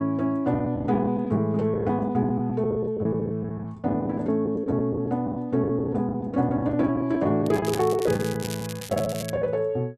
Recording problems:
packet loss; 12% of the sound replaced, filled with the last packet
crackle; from 7.5 to 9.5 s; loose cable, SNR 13 dB

